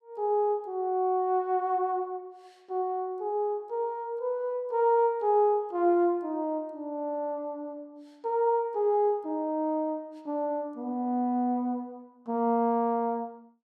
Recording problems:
none

